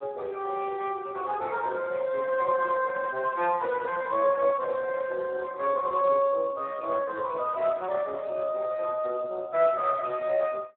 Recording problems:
telephone audio; 280 Hz to 2.6 kHz, Speex

